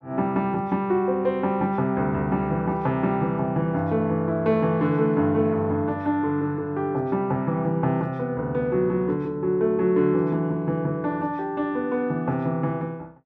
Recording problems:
none

